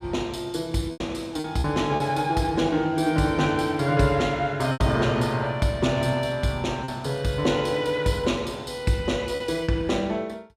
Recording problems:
lost packets; 4% of the sound replaced, filled with repeated pitch periods

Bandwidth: 14.5 kHz